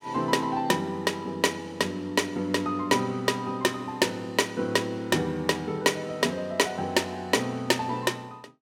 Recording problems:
none

